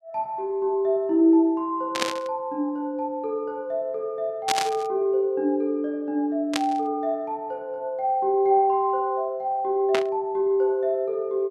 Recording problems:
burst of static; 4 times, first at 2 s; peak +4 dB vs average level

